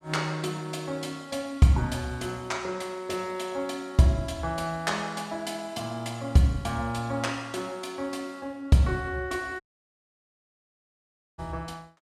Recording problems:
audio cutting out; at 9.5 s for 2 s

